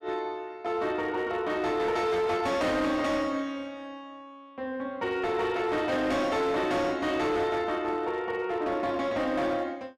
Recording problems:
distorted audio; hard clipping, signal-to-distortion ratio 11 dB

